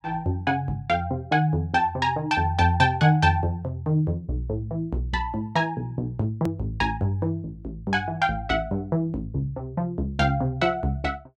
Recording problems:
click at an edit; at 6.5 s

